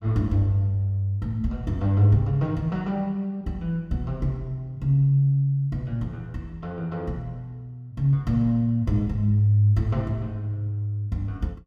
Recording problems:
none

